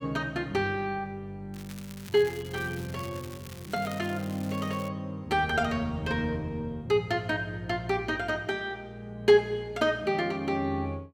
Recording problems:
crackling; from 1.5 to 5 s; loose cable, SNR 18 dB

